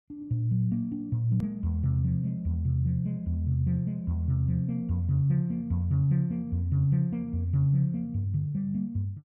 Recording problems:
edit click; at 1.5 s

